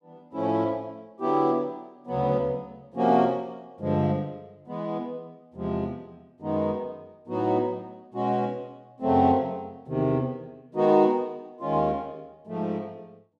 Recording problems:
none

